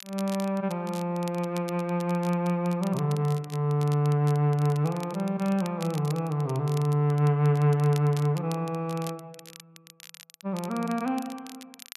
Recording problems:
crackling; vinyl, SNR 20 dB

